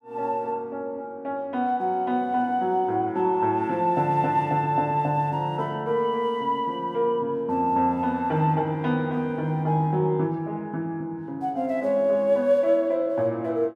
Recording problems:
none

